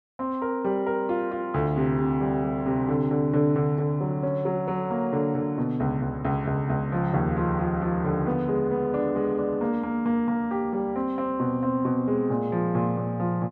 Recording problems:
none

